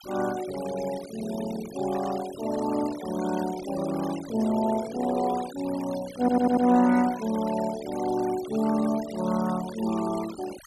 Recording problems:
noise reduction artefacts; signal-to-artefact ratio 16 dB
stutter; at 6 s

